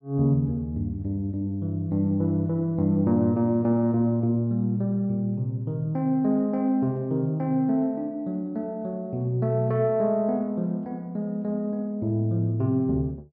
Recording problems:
none

